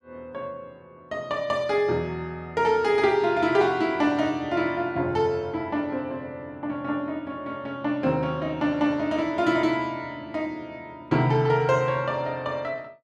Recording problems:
none

